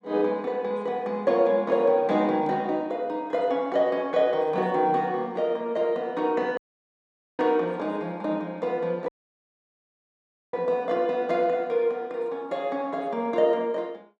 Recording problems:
dropout; at 6.5 s for 1 s and at 9 s for 1.5 s

